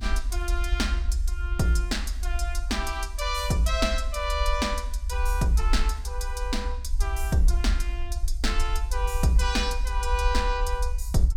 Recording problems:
low-frequency rumble; below 62 Hz, SNR 1 dB

